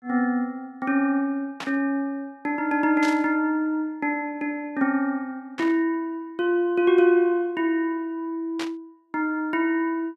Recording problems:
burst of static; 4 times, first at 1.5 s; peak -5 dB vs average level

